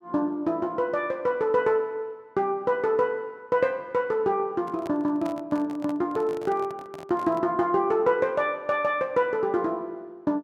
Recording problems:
microphone handling noise; from 4.5 to 7.5 s; peak -9 dB vs average level

